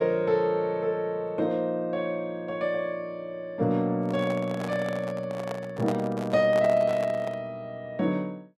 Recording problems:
microphone handling noise; from 4 to 7.5 s; peak -2 dB vs average level

